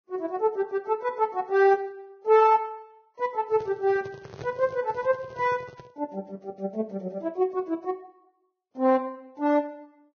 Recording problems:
lossy compression; Vorbis, log-spectral distance 2 dB, nothing above 6.2 kHz
handling noise; from 3.5 to 6 s; peak -8 dB vs average level

